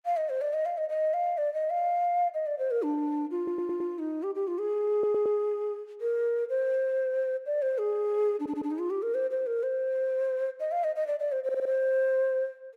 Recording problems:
audio stuttering; 4 times, first at 3.5 s

